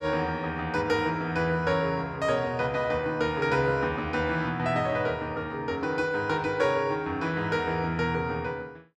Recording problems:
none

